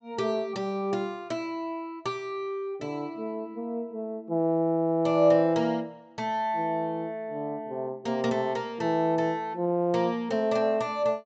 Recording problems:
treble cut off; nothing above 8 kHz

